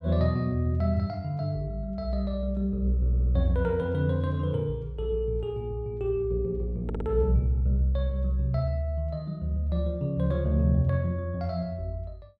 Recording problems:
audio stuttering; at 3 s and at 7 s

